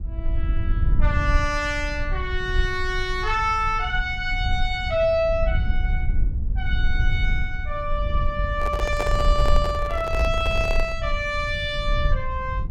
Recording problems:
rumble; below 64 Hz, SNR 2 dB
microphone handling noise; from 8.5 to 11 s; peak 0 dB vs average level

